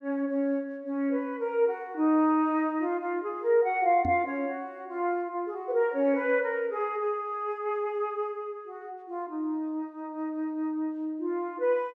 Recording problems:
microphone bump; at 4 s; peak -1 dB vs average level

